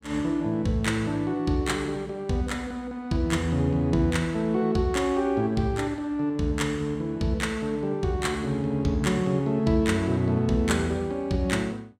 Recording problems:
none

